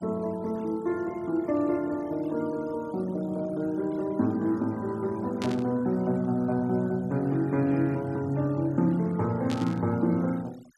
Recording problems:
noise reduction artefacts; signal-to-artefact ratio 25 dB
static burst; at 5.5 s and at 9.5 s; peak -5 dB vs average level

